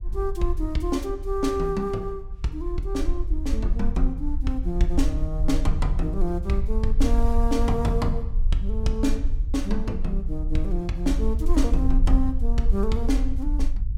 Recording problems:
low-frequency rumble; below 48 Hz, strongest tone 20 Hz, SNR 0 dB

